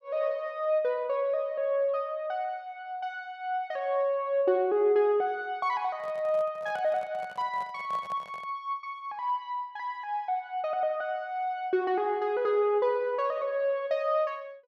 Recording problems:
microphone handling noise; from 6 to 8.5 s; peak -11 dB vs average level

